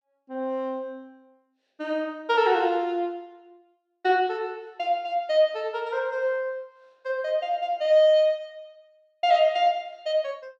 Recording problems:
none

